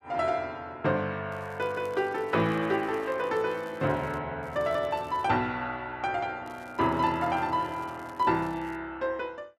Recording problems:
crackle; from 1.5 to 4 s, at 4.5 s and from 6.5 to 9 s; loose cable, SNR 27 dB

